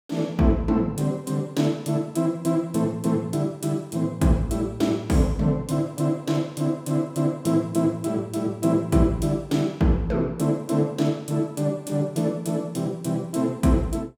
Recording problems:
none

